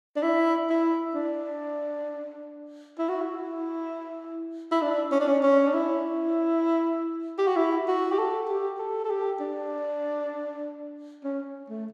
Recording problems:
none

